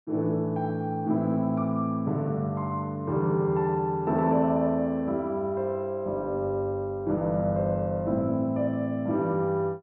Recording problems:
none

